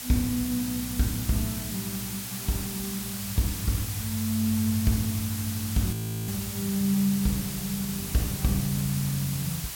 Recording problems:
mains hum; 60 Hz, harmonics up to 480 Hz, SNR 23 dB
background hiss; slope +1 dB per octave, SNR 5 dB
audio freezing; at 6 s

